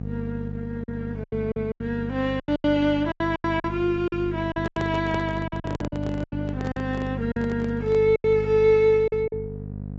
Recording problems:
low-pass filter; nothing above 7.6 kHz
lossy codec; Opus, log-spectral distance 2 dB
hum; 50 Hz, harmonics up to 700 Hz, SNR 8 dB
packet loss; 13% of the sound replaced, filled with silence
handling noise; from 4.5 to 8 s; peak -3 dB vs average level

